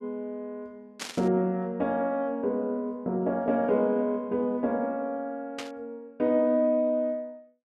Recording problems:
static burst; at 1 s and at 5.5 s; peak -3 dB vs average level

